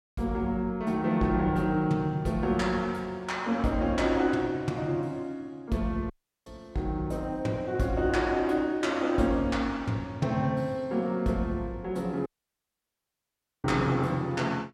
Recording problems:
dropout; at 6 s and at 12 s for 1.5 s

